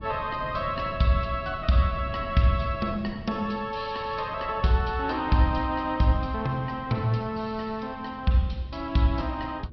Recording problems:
treble cut off; nothing above 5 kHz
lossy compression; MP3, log-spectral distance 2 dB
wind on the microphone; below 190 Hz, SNR 15 dB

